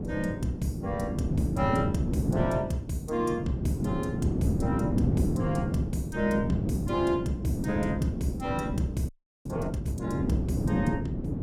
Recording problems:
electrical hum; 60 Hz, harmonics up to 480 Hz, SNR 19 dB
wind noise; below 290 Hz, SNR -1 dB
audio freezing; at 9 s

